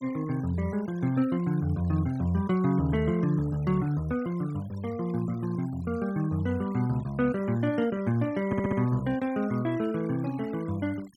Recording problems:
denoising artefacts; signal-to-artefact ratio 23 dB
stutter; at 8.5 s

